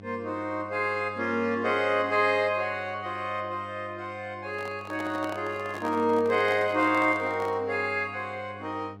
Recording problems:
electrical hum; 50 Hz, harmonics up to 1.1 kHz, SNR 19 dB
handling noise; from 4.5 to 7.5 s; peak -6 dB vs average level

